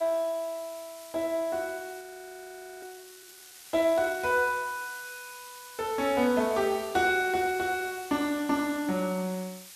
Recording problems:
background hiss; slope +3 dB per octave, SNR 17 dB
audio freezing; at 2 s for 1 s

